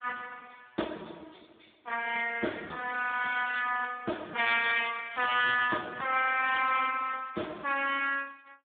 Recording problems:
telephone audio; 220 Hz to 3.6 kHz, Speex

